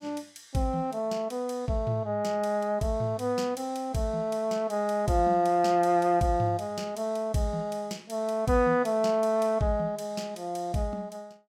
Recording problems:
none

